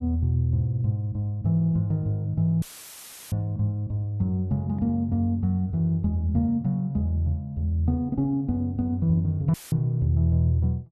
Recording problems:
dropout; at 2.5 s for 0.5 s and at 9.5 s; filled with static

